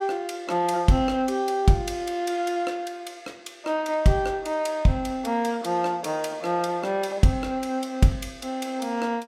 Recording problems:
none

